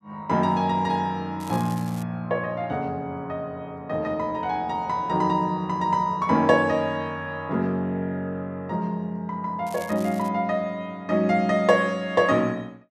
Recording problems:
crackle; at 1.5 s and at 9.5 s; loose cable, SNR 20 dB

